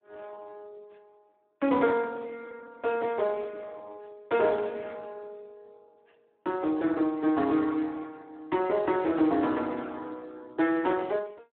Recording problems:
telephone audio; 240 Hz to 3 kHz, Speex

